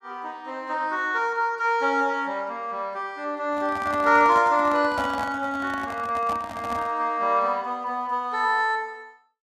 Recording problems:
microphone handling noise; from 3.5 to 7 s; peak -4 dB vs average level

